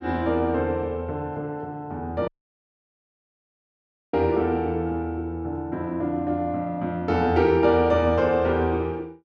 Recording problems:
audio cutting out; at 2.5 s for 2 s

